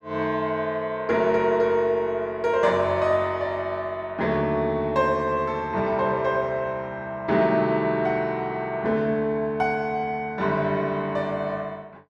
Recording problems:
none

